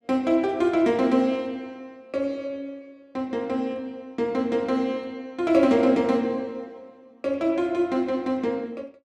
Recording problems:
none

